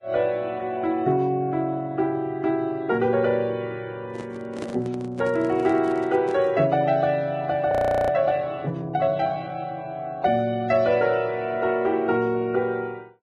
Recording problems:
lossy codec; Vorbis, log-spectral distance 2 dB, nothing above 13.3 kHz
microphone handling noise; from 4 to 6.5 s; peak -4 dB vs average level
frozen audio; at 7.5 s

